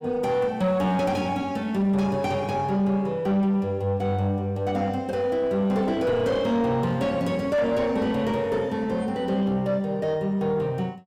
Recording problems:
distorted audio; soft clipping, signal-to-distortion ratio 10 dB

